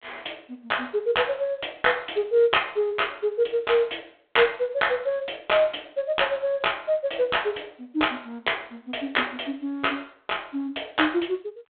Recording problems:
phone line; 260 Hz to 3.5 kHz, G.726

